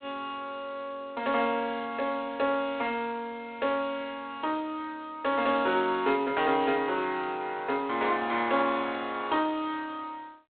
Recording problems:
phone line; 320 Hz to 3.7 kHz, G.726

